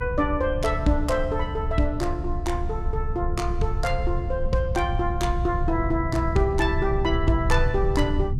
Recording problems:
rumble; below 90 Hz, strongest tone 24 Hz, SNR 3 dB

